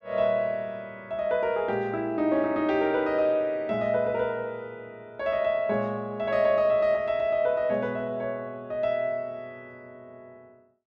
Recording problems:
none

